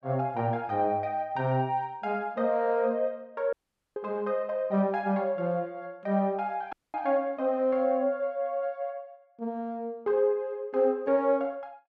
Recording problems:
dropout; at 3.5 s and at 6.5 s

